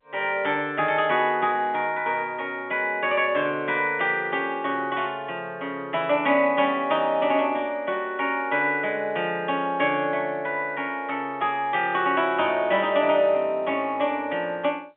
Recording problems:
phone line; 260 Hz to 3.3 kHz, G.711

